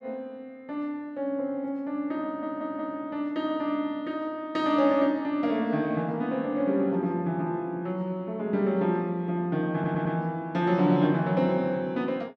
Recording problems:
audio stuttering; at 2.5 s and at 9.5 s

